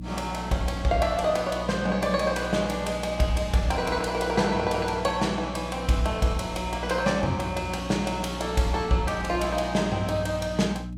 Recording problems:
hum; 60 Hz, harmonics up to 300 Hz, SNR 10 dB

